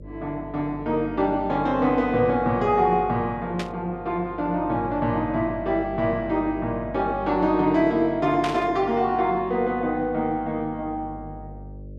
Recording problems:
hum; 50 Hz, harmonics up to 600 Hz, SNR 17 dB
burst of static; at 3.5 s and at 8.5 s; peak -3 dB vs average level

